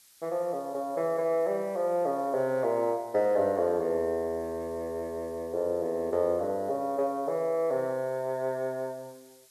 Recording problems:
hiss; slope +3 dB per octave, SNR 27 dB

